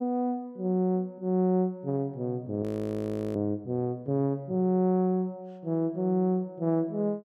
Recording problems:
audio freezing; at 2.5 s for 0.5 s

